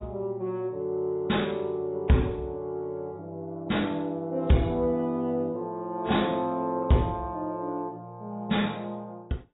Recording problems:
lossy compression; AAC, log-spectral distance 2 dB, nothing above 3.8 kHz
distortion; soft clipping, signal-to-distortion ratio 11 dB

